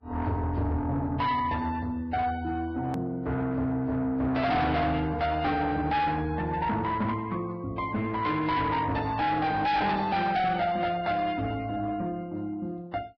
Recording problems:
lossy compression; Vorbis, log-spectral distance 2 dB
distorted audio; soft clipping, signal-to-distortion ratio 7 dB
click at an edit; at 3 s

